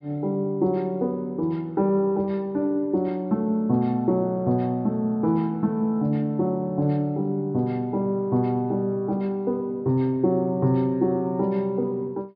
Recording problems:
treble cut off; nothing above 5.5 kHz

